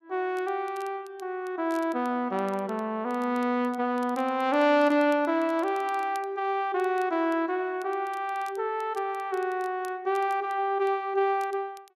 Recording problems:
crackle; vinyl, SNR 28 dB

